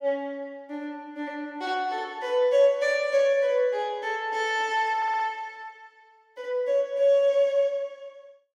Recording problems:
audio stuttering; at 5 s

